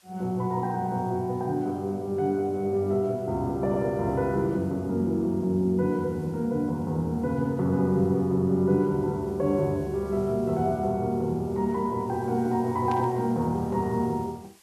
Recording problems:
hiss; slope 0 dB per octave, SNR 30 dB
burst of static; at 13 s; peak -11 dB vs average level

